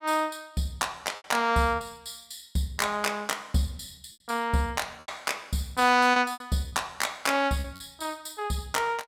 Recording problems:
lost packets; 5% of the sound replaced, filled with repeated pitch periods

